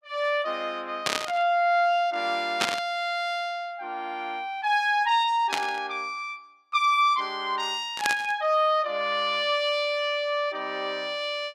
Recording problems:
static burst; 4 times, first at 1 s; peak +5 dB vs average level

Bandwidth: 14.5 kHz